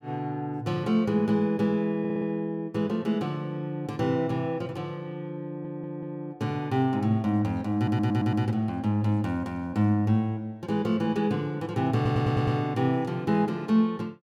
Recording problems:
stutter; 4 times, first at 2 s

